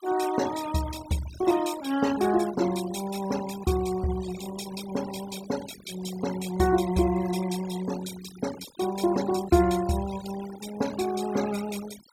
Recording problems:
denoising artefacts; signal-to-artefact ratio 13 dB

